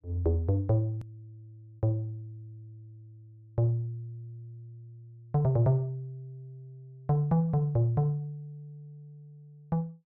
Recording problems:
edit click; at 1 s

